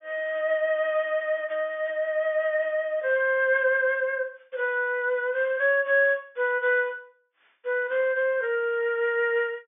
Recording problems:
low-pass filter; nothing above 3.6 kHz

